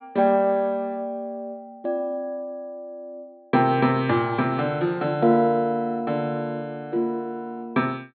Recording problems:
treble missing; nothing above 4.3 kHz

